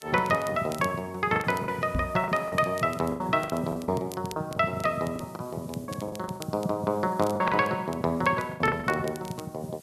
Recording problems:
hiss; slope +2 dB per octave, SNR 26 dB
crackle; vinyl, SNR 20 dB
lost packets; 11% of the sound replaced, filled with the last packet
microphone bump; at 2 s; peak 0 dB vs average level

